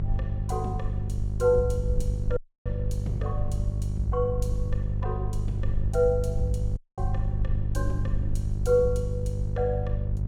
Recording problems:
hum; 50 Hz, harmonics up to 400 Hz, SNR 1 dB
low-frequency rumble; below 58 Hz, SNR 6 dB
dropout; at 2.5 s and at 7 s

